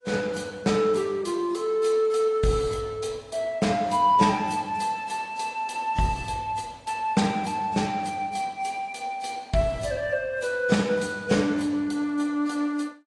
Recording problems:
lossy codec; AAC, log-spectral distance 3 dB, nothing above 10.7 kHz

